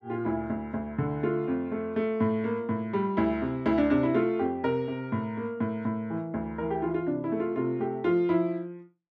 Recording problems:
none

